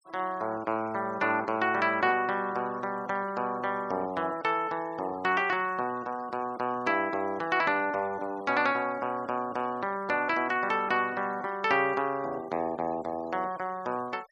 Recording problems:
noise reduction artefacts; signal-to-artefact ratio 24 dB

